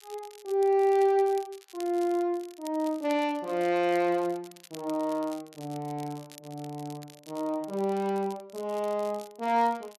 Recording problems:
crackling; vinyl, SNR 22 dB

